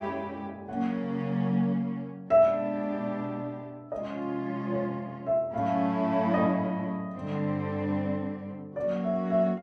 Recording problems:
none

